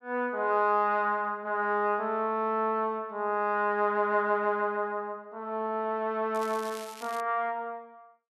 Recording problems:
crackle; at 6.5 s; loose cable, SNR 18 dB

